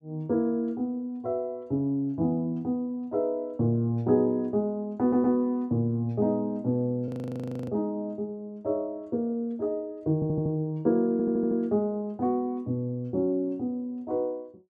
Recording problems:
stutter; at 5 s, at 10 s and at 11 s
audio freezing; at 7 s for 0.5 s

